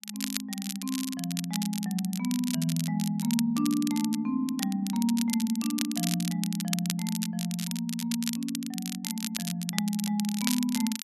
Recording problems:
crackling; vinyl, SNR 6 dB

